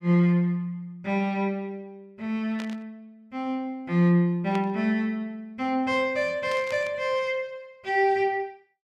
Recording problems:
static burst; at 2.5 s, at 4.5 s and at 6.5 s; peak -8 dB vs average level

